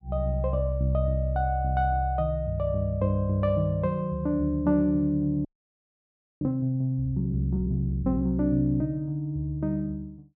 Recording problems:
audio freezing; at 5.5 s for 1 s

